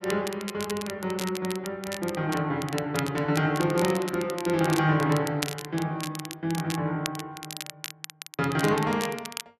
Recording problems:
crackle; vinyl, SNR 10 dB

